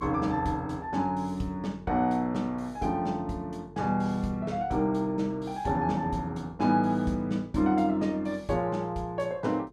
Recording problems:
hum; 50 Hz, harmonics up to 450 Hz, SNR 23 dB

